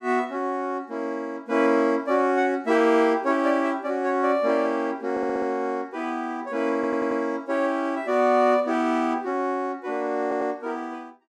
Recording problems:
audio stuttering; at 5 s, at 6.5 s and at 10 s

